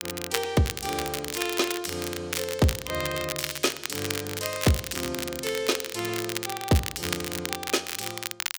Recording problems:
crackling; vinyl, SNR 3 dB

